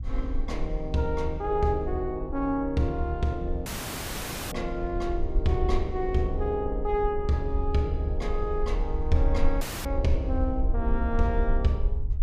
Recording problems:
low-frequency rumble; below 54 Hz, SNR 4 dB
dropout; at 3.5 s for 1 s and at 9.5 s

